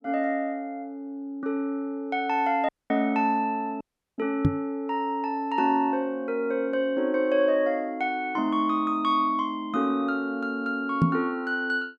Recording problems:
dropout; at 2.5 s and at 4 s
knock on the microphone; at 4.5 s and at 11 s; peak +9 dB vs average level

